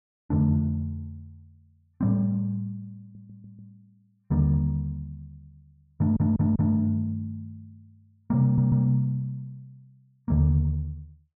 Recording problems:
audio stuttering; at 3 s, at 6 s and at 8.5 s

